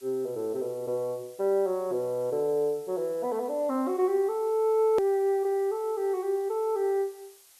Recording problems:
background hiss; slope +2 dB per octave, SNR 25 dB
hard cut with a click; at 5 s

